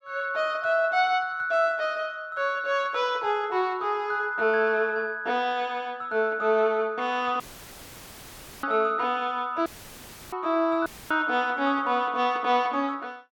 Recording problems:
audio cutting out; at 7.5 s for 1 s, at 9.5 s for 0.5 s and at 11 s; filled with static

